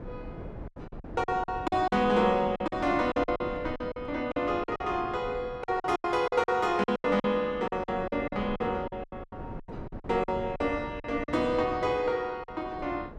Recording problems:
wind on the microphone; below 410 Hz, SNR 15 dB
lost packets; 14% of the sound replaced, filled with silence

